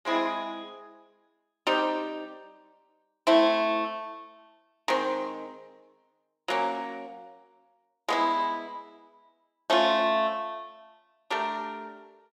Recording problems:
none

